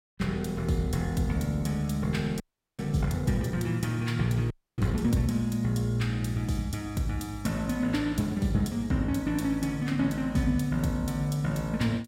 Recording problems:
audio freezing; at 2.5 s and at 4.5 s

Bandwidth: 16 kHz